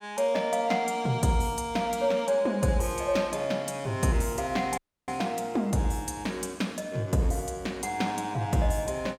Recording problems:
dropout; at 5 s

